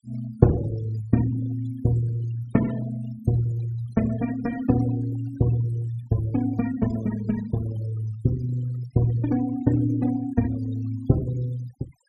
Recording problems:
denoising artefacts; signal-to-artefact ratio 19 dB

